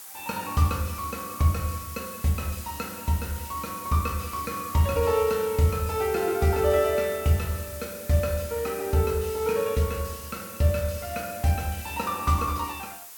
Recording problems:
hiss; SNR 12 dB

